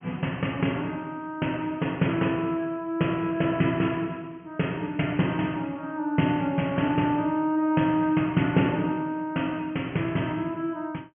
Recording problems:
low-pass filter; nothing above 3.1 kHz

